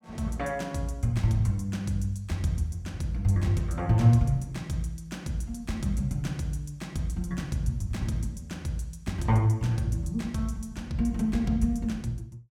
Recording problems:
none

